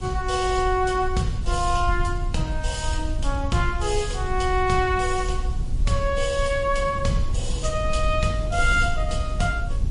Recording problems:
lossy codec; MP3, log-spectral distance 2 dB, nothing above 10.4 kHz
hiss; SNR 21 dB
rumble; below 90 Hz, SNR 12 dB
wind on the microphone; below 68 Hz, SNR 5 dB

